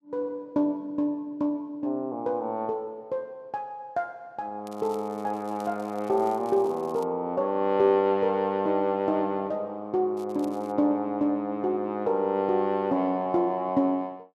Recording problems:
crackle; from 4.5 to 7 s and at 10 s; loose cable, SNR 27 dB

